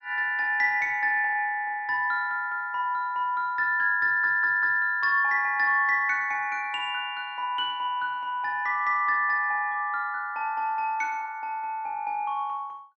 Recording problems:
audio stuttering; at 4 s

